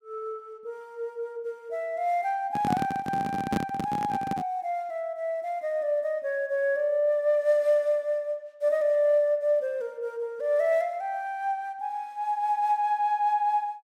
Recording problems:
handling noise; from 2.5 to 4.5 s; peak +3 dB vs average level

